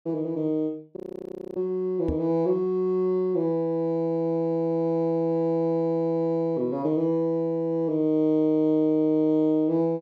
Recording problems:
frozen audio; at 1 s for 0.5 s
knock on the microphone; at 2 s; peak -2 dB vs average level

